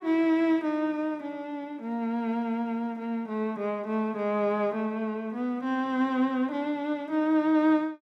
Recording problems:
none

